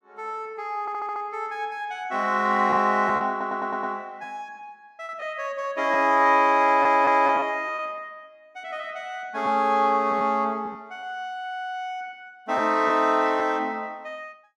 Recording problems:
packet loss; 3% of the sound replaced, filled with repeated pitch periods
stutter; at 1 s, at 3.5 s and at 6.5 s

